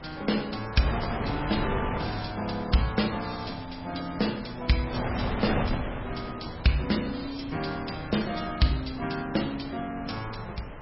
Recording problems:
lossy codec; MP3, log-spectral distance 8 dB, nothing above 5.5 kHz
wind on the microphone; below 940 Hz, SNR 6 dB

